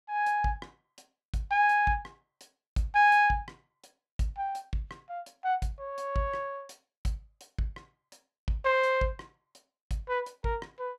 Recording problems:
none

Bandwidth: 14 kHz